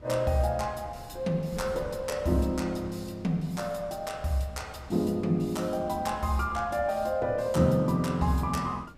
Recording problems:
wind noise; below 280 Hz, SNR 20 dB

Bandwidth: 15.5 kHz